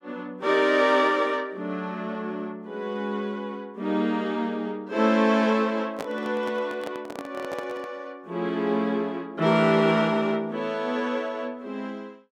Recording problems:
handling noise; from 6 to 8 s; peak -3 dB vs average level

